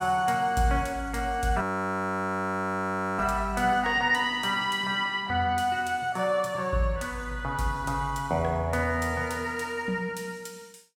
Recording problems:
audio freezing; at 1.5 s for 1.5 s

